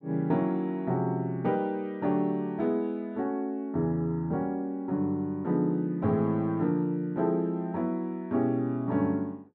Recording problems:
none

